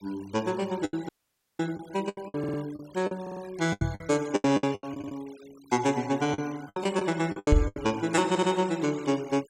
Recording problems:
noise reduction artefacts; signal-to-artefact ratio 21 dB
lost packets; 13% of the sound replaced, filled with the last packet
audio cutting out; at 1 s for 0.5 s
audio stuttering; 4 times, first at 2.5 s
knock on the microphone; at 4 s and at 7.5 s; peak +10 dB vs average level

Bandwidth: 16 kHz